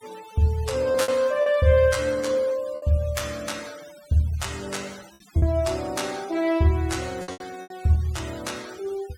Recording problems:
denoising artefacts; signal-to-artefact ratio 20 dB
packet loss; 5% of the sound replaced, filled with repeated pitch periods

